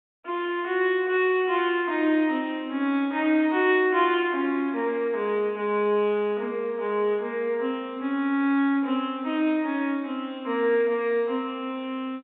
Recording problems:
telephone audio; 220 Hz to 3.6 kHz, G.711

